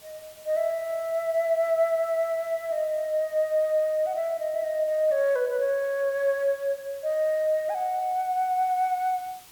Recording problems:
background hiss; slope 0 dB per octave, SNR 23 dB

